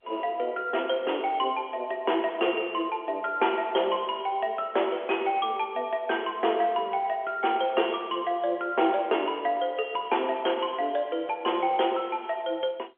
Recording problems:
phone line; 300 Hz to 3.4 kHz, G.711

